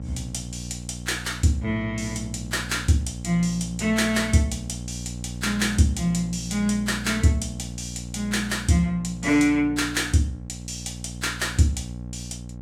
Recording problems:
electrical hum; 60 Hz, harmonics up to 840 Hz, SNR 11 dB

